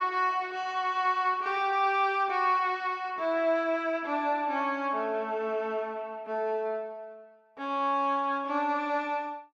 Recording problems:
none

